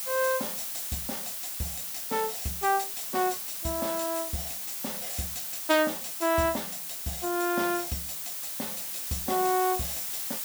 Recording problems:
background hiss; slope +2 dB per octave, SNR 2 dB

